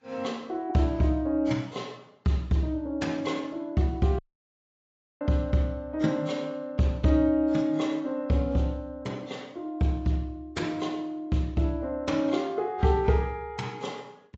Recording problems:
codec artefacts; AAC, log-spectral distance 2 dB, nothing above 7.6 kHz
audio cutting out; at 4 s for 1 s

